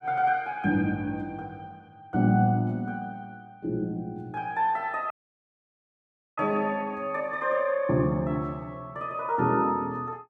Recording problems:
dropout; at 5 s for 1.5 s

